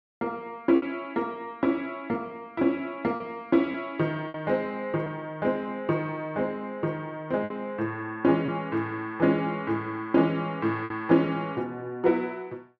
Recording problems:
packet loss; 3% of the sound replaced, filled with repeated pitch periods

